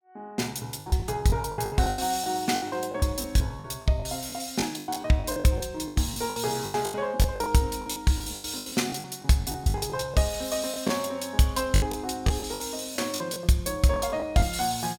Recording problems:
packet loss; 16% of the sound replaced, filled with the last packet

